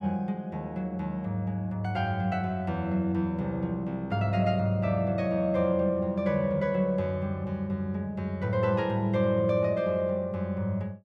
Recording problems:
none

